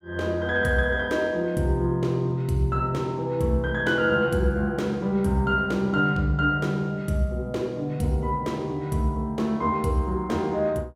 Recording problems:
none

